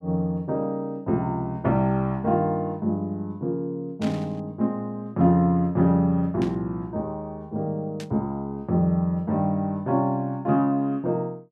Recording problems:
burst of static; at 4 s, at 6.5 s and at 8 s; peak -10 dB vs average level

